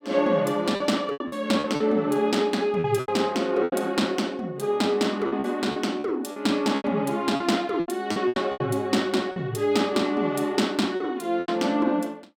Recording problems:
packet loss; 10% of the sound replaced, filled with repeated pitch periods

